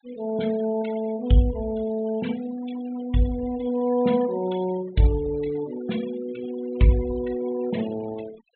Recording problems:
low-pass filter; nothing above 4 kHz
denoising artefacts; signal-to-artefact ratio 17 dB

